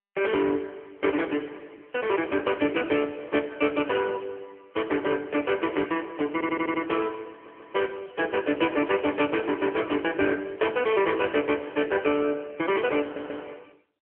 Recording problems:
phone line; 260 Hz to 3.3 kHz, AMR-NB
audio stuttering; at 6.5 s, at 7.5 s and at 13 s

